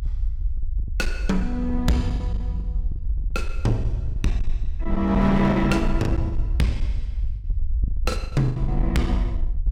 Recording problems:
distortion; hard clipping, uneven, signal-to-distortion ratio 12 dB
low-frequency rumble; below 58 Hz, SNR 4 dB
lost packets; 7% of the sound replaced, filled with the last packet

